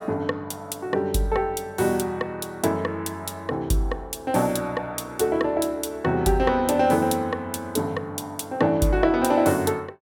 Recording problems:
none

